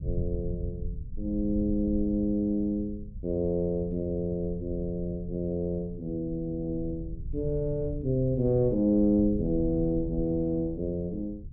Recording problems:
low-frequency rumble; below 96 Hz, SNR 11 dB

